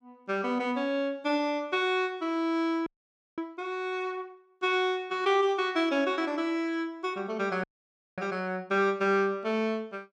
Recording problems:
frozen audio; at 3 s for 0.5 s and at 7.5 s for 0.5 s

